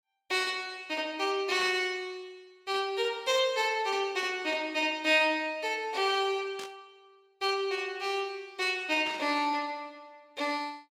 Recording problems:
static burst; at 1.5 s, at 6.5 s and at 9 s; peak -8 dB vs average level

